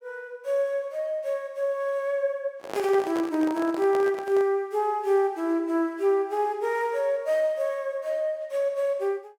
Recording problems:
handling noise; from 2.5 to 4.5 s; peak -4 dB vs average level

